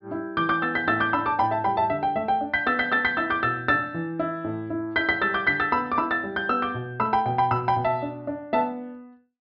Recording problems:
treble cut off; nothing above 5.5 kHz

